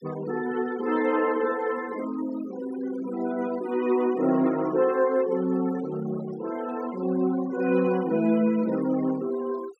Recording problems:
noise reduction artefacts; signal-to-artefact ratio 19 dB

